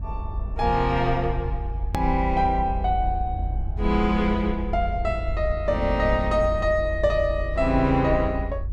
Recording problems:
rumble; below 80 Hz, strongest tone 50 Hz, SNR 6 dB
hard cut with a click; at 2 s

